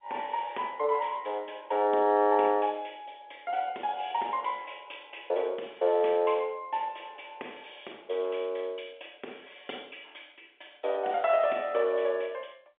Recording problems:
phone line; 320 Hz to 3.6 kHz, G.711

